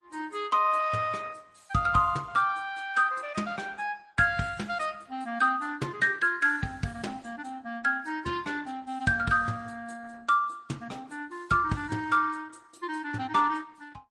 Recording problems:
lossy compression; MP3, then Opus, log-spectral distance 4 dB, nothing above 9.8 kHz

